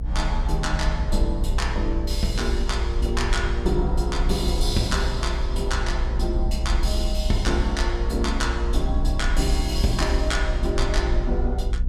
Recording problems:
electrical hum; 60 Hz, harmonics up to 780 Hz, SNR 12 dB
rumble; below 58 Hz, strongest tone 28 Hz, SNR 0 dB

